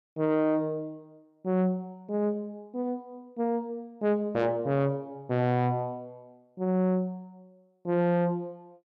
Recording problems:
distortion; soft clipping, signal-to-distortion ratio 10 dB

